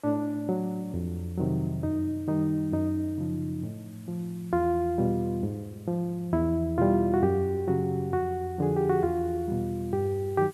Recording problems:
hiss; slope -2 dB per octave, SNR 29 dB

